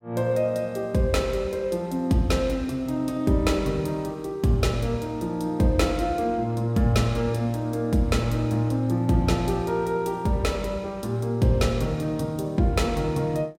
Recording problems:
none

